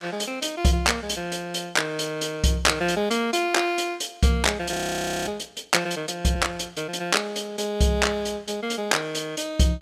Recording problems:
frozen audio; at 4.5 s for 0.5 s

